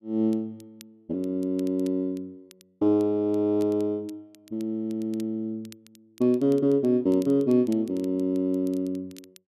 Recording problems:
crackling; vinyl, SNR 29 dB

